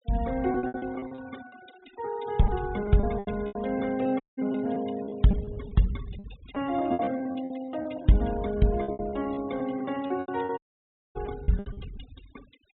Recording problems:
treble missing; nothing above 3.8 kHz
denoising artefacts; signal-to-artefact ratio 20 dB
lost packets; 15% of the sound replaced, filled with repeated pitch periods
audio cutting out; at 4 s and at 11 s for 0.5 s

